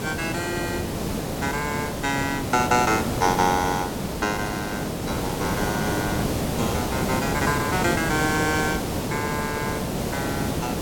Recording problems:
hiss; SNR 1 dB

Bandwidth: 17 kHz